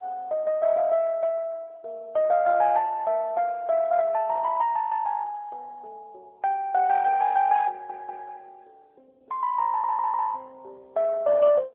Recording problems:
telephone audio; 370 Hz to 3.9 kHz, AMR-NB
stutter; at 7.5 s and at 9.5 s

